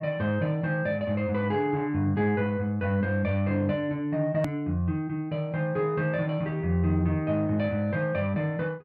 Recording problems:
edit click; at 4.5 s

